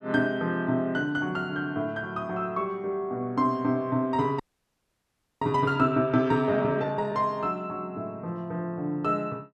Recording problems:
audio freezing; at 4.5 s for 1 s

